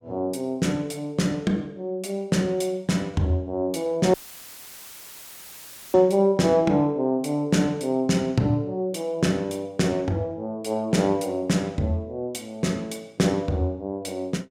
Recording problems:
dropout; at 4 s for 2 s; filled with static

